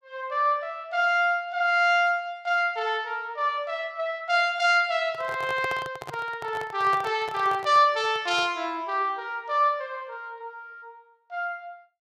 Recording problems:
handling noise; from 5 to 8.5 s; peak -6 dB vs average level

